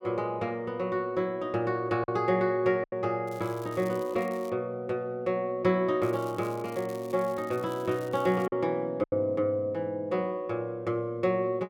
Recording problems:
packet loss; 2% of the sound replaced, filled with silence
crackling; from 3.5 to 4.5 s and from 6 to 8.5 s; loose cable, SNR 23 dB

